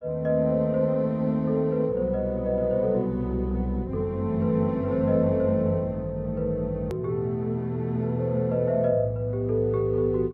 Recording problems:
hard cut with a click; at 7 s

